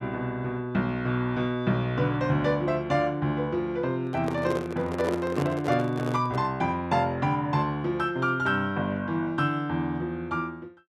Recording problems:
microphone handling noise; from 4 to 6.5 s; peak +1 dB vs average level

